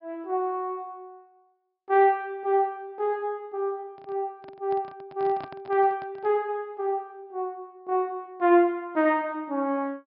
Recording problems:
low-pass filter; nothing above 5.5 kHz
handling noise; from 4 to 6.5 s; peak -10 dB vs average level

